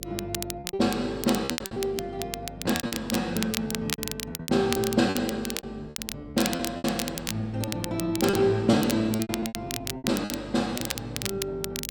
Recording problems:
electrical hum; 50 Hz, harmonics up to 600 Hz, SNR 16 dB
crackle; vinyl, SNR 6 dB
packet loss; 15% of the sound replaced, filled with repeated pitch periods

